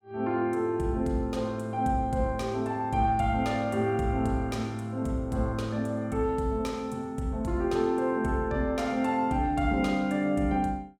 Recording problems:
none

